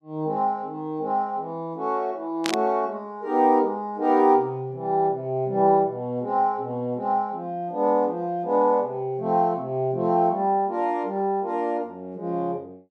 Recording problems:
static burst; at 2.5 s; peak +1 dB vs average level

